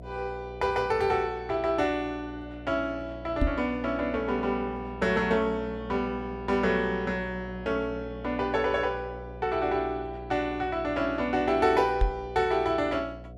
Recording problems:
electrical hum; 60 Hz, harmonics up to 720 Hz, SNR 15 dB
microphone bump; at 3.5 s and at 12 s; peak +5 dB vs average level

